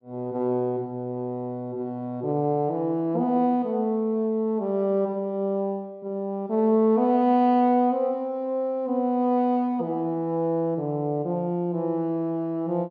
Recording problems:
none

